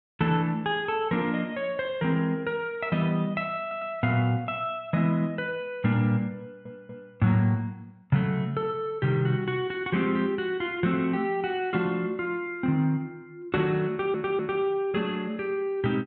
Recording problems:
audio stuttering; at 3.5 s, at 6.5 s and at 14 s

